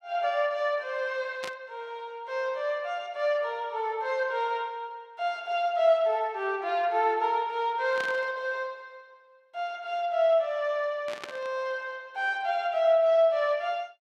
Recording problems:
burst of static; at 1.5 s, at 8 s and at 11 s; peak -5 dB vs average level

